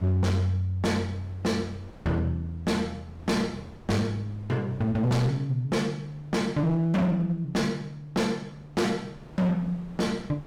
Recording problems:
distortion; hard clipping, uneven, signal-to-distortion ratio 8 dB
wind on the microphone; below 530 Hz, SNR 23 dB

